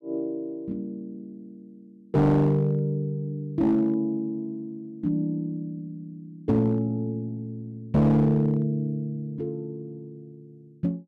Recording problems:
distortion; hard clipping, uneven, signal-to-distortion ratio 10 dB

